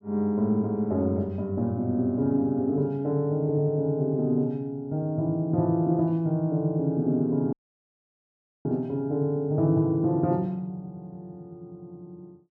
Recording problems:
audio cutting out; at 7.5 s for 1 s

